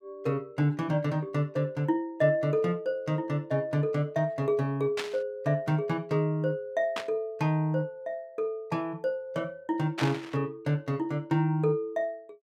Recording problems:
static burst; at 5 s, at 7 s and at 10 s; peak 0 dB vs average level

